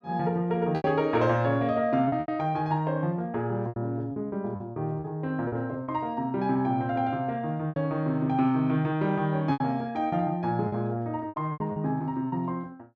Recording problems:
lost packets; 8% of the sound replaced, filled with repeated pitch periods

